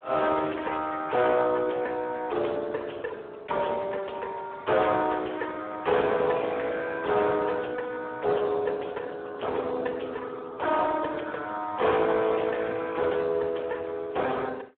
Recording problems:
phone line; 320 Hz to 3.6 kHz, Speex
distortion; hard clipping, uneven, signal-to-distortion ratio 9 dB

